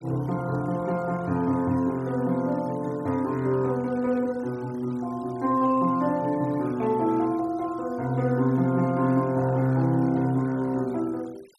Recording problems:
noise reduction artefacts; signal-to-artefact ratio 26 dB

